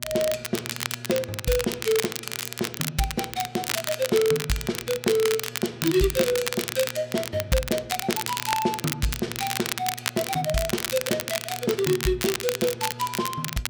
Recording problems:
hum; 60 Hz, harmonics up to 600 Hz, SNR 18 dB
crackling; vinyl, SNR 4 dB

